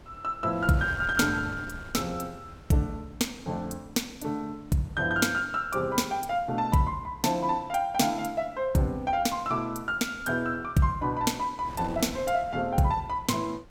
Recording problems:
wind on the microphone; below 530 Hz, SNR 20 dB

